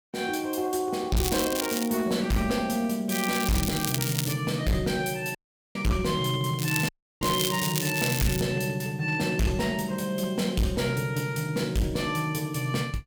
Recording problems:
distortion; hard clipping, signal-to-distortion ratio 6 dB
crackle; at 1 s, from 3 to 4.5 s and from 6.5 to 8.5 s; loose cable, SNR 4 dB
audio cutting out; at 5.5 s and at 7 s

